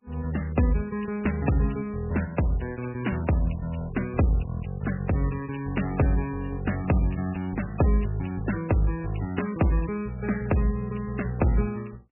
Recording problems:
lossy compression; MP3, log-spectral distance 5 dB, nothing above 2.8 kHz

